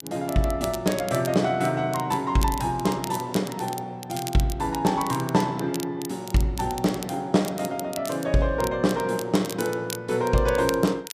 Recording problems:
crackle; vinyl, SNR 14 dB

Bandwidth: 14.5 kHz